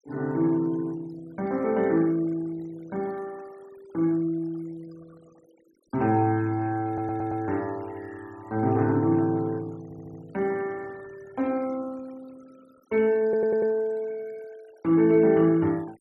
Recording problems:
noise reduction artefacts; signal-to-artefact ratio 26 dB
audio stuttering; at 7 s, at 10 s and at 13 s

